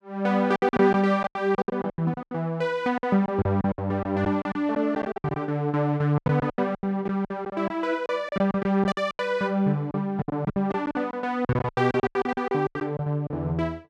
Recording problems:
lost packets; 18% of the sound replaced, filled with silence

